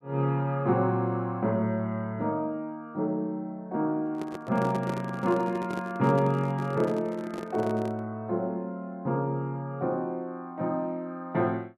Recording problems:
microphone handling noise; from 4 to 8 s; peak -2 dB vs average level

